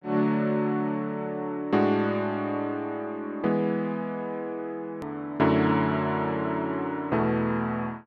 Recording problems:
edit click; at 5 s

